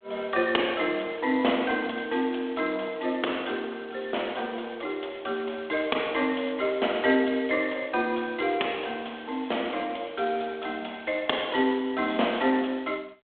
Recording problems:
phone line; 240 Hz to 3.5 kHz, G.726

